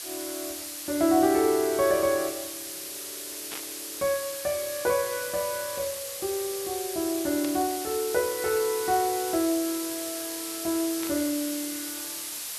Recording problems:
hiss; slope +2 dB per octave, SNR 6 dB
static burst; at 3.5 s, at 7.5 s and at 11 s; peak -7 dB vs average level

